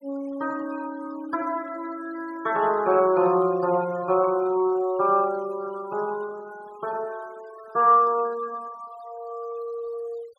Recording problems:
denoising artefacts; signal-to-artefact ratio 24 dB

